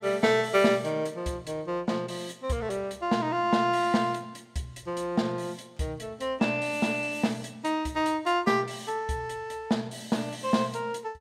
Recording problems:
none

